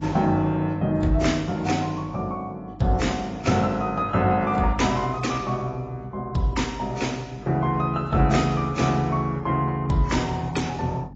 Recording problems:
lossy codec; AAC, then AAC, log-spectral distance 3 dB, nothing above 7.3 kHz
hum; 50 Hz, harmonics up to 300 Hz, SNR 22 dB

